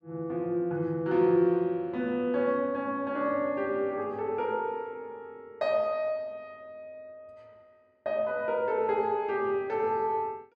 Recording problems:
none

